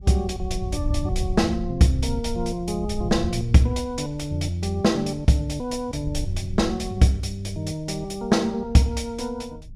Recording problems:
wind on the microphone; below 94 Hz, SNR 10 dB

